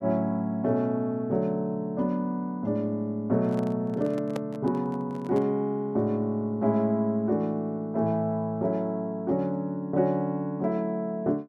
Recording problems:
microphone handling noise; from 3.5 to 5.5 s; peak -3 dB vs average level

